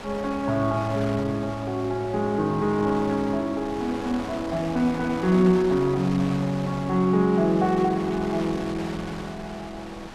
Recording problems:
wind noise; below 2 kHz, SNR 14 dB

